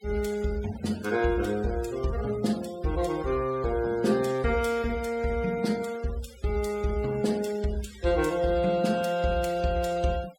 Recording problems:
noise reduction artefacts; signal-to-artefact ratio 19 dB

